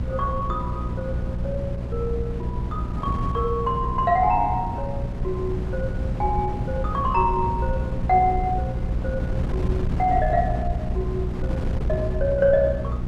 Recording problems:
hum; 60 Hz, harmonics up to 660 Hz, SNR 6 dB
wind on the microphone; below 140 Hz, SNR 5 dB

